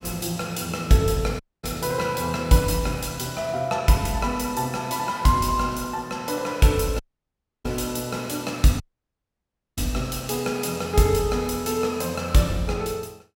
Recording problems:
dropout; at 1.5 s, at 7 s for 0.5 s and at 9 s for 1 s

